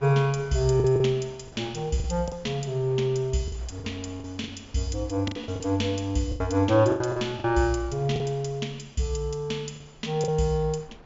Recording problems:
low-pass filter; nothing above 7.4 kHz
wind on the microphone; below 780 Hz, SNR 24 dB
lost packets; 8% of the sound replaced, filled with the last packet

